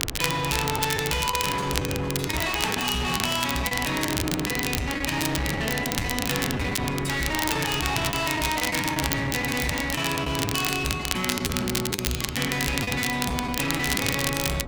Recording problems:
distortion; hard clipping, uneven, signal-to-distortion ratio 7 dB
wind noise; below 540 Hz, SNR 14 dB
crackling; vinyl, SNR 4 dB
lost packets; 8% of the sound replaced, filled with the last packet

